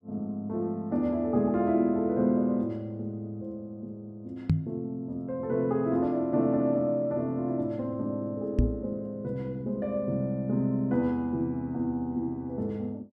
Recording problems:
microphone bump; at 4.5 s and at 8.5 s; peak +9 dB vs average level

